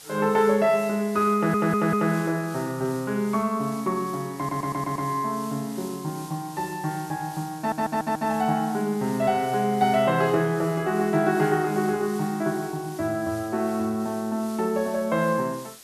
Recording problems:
hiss; slope 0 dB per octave, SNR 19 dB
stutter; at 1.5 s, at 4.5 s and at 7.5 s

